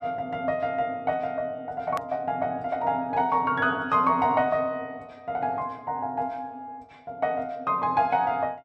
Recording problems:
hard cut with a click; at 2 s

